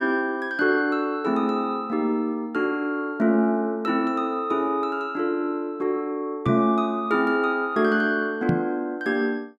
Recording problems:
microphone thump; at 6.5 s and at 8.5 s; peak +4 dB vs average level

